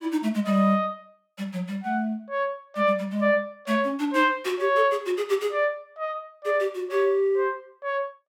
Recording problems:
none

